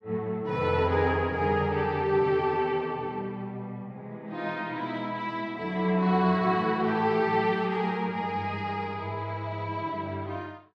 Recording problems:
none

